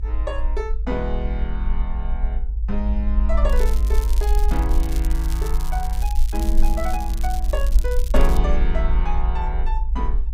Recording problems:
low-frequency rumble; below 54 Hz, strongest tone 20 Hz, SNR -6 dB
crackle; from 3.5 to 8.5 s; loose cable, SNR 11 dB

